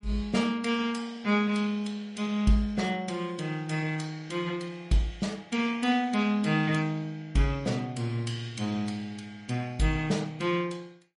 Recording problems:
lossy compression; MP3, log-spectral distance 2 dB, nothing above 10.4 kHz

